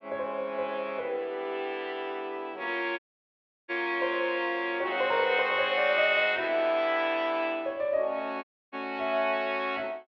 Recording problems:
audio cutting out; at 3 s for 0.5 s and at 8.5 s

